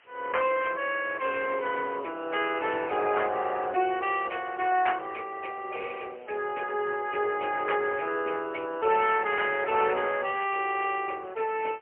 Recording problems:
telephone audio; 280 Hz to 3.1 kHz, AMR-NB, then MP3
hiss; SNR 30 dB

